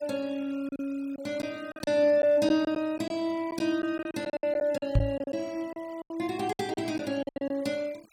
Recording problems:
noise reduction artefacts; signal-to-artefact ratio 24 dB
lost packets; 12% of the sound replaced, filled with silence
knock on the microphone; at 5 s; peak +8 dB vs average level

